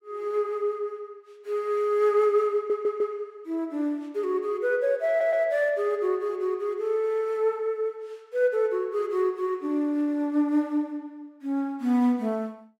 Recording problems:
audio stuttering; at 2.5 s and at 5 s

